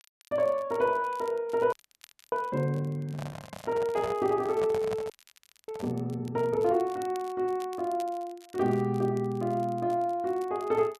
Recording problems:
crackling; vinyl, SNR 26 dB
frozen audio; at 1.5 s for 0.5 s and at 5 s for 0.5 s
handling noise; from 3 to 6 s; peak -4 dB vs average level

